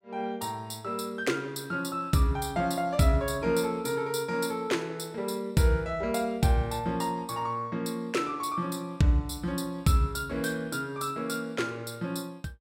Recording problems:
none

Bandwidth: 16 kHz